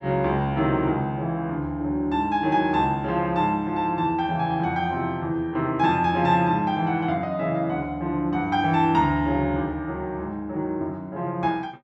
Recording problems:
none

